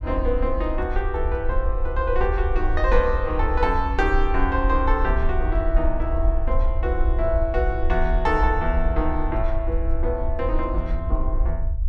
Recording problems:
low-frequency rumble; below 56 Hz, SNR 1 dB

